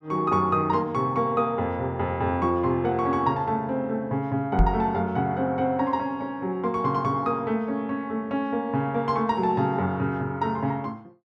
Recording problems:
knock on the microphone; at 4.5 s; peak +7 dB vs average level

